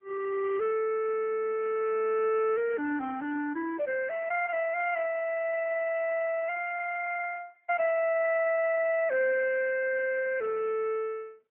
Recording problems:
phone line; 320 Hz to 3.5 kHz, AMR-NB

